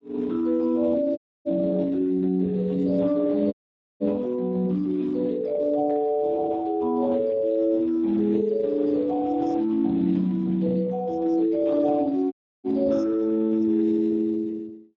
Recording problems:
lossy compression; Speex, log-spectral distance 2 dB
dropout; at 1 s, at 3.5 s and at 12 s

